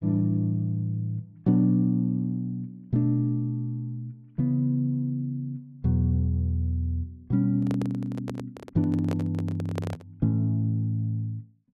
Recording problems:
microphone handling noise; from 7.5 to 10 s; peak -3 dB vs average level

